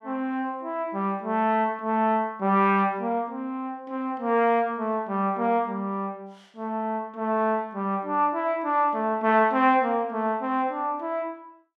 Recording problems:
none

